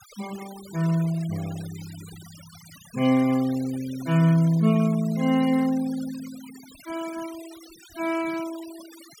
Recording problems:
denoising artefacts; signal-to-artefact ratio 20 dB

